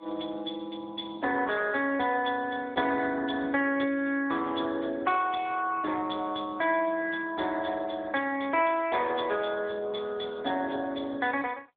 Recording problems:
telephone audio; 240 Hz to 3.5 kHz, AMR-NB

